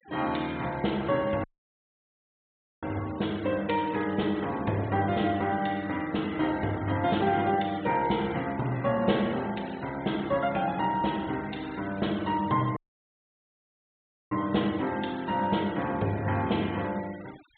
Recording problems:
treble missing; nothing above 4 kHz
denoising artefacts; signal-to-artefact ratio 19 dB
dropout; at 1.5 s for 1.5 s and at 13 s for 1.5 s

